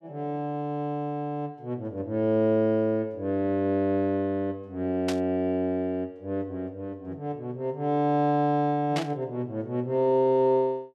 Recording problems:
burst of static; at 5 s and at 9 s; peak -2 dB vs average level

